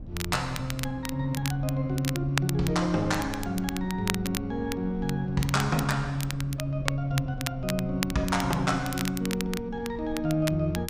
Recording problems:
electrical hum; 60 Hz, harmonics up to 720 Hz, SNR 22 dB
low-frequency rumble; below 120 Hz, SNR 15 dB
crackling; vinyl, SNR 9 dB

